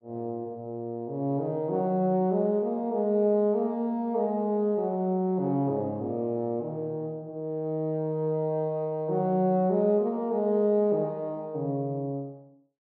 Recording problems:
none

